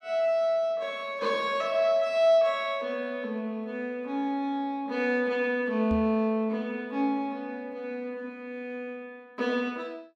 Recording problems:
microphone bump; at 6 s; peak -3 dB vs average level

